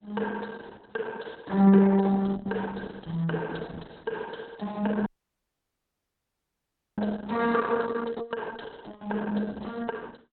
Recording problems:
codec artefacts; Opus, log-spectral distance 6 dB, nothing above 4.1 kHz
audio cutting out; at 5 s for 2 s

